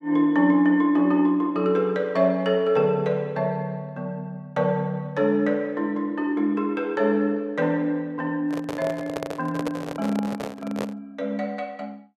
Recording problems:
microphone handling noise; from 8.5 to 11 s; peak -2 dB vs average level

